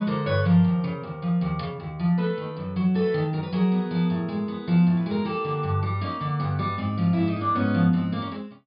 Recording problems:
treble cut off; nothing above 5.1 kHz

